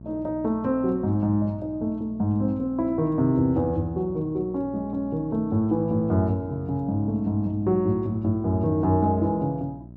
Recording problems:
hum; 60 Hz, harmonics up to 660 Hz, SNR 18 dB

